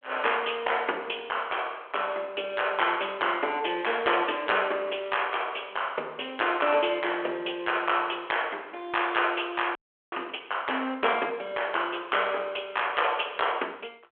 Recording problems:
telephone audio; 300 Hz to 3.3 kHz, G.726
audio freezing; at 10 s

